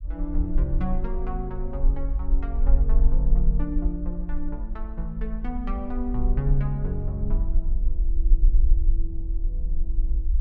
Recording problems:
rumble; below 44 Hz, strongest tone 24 Hz, SNR -5 dB

